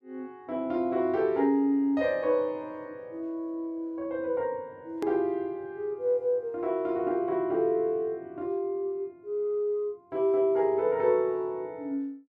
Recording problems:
hard cut with a click; at 5 s

